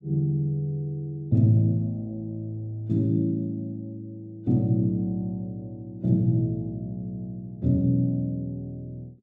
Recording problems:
none

